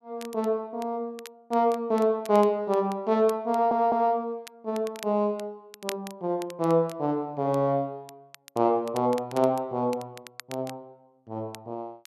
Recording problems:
crackling; vinyl, SNR 20 dB
stutter; at 3.5 s

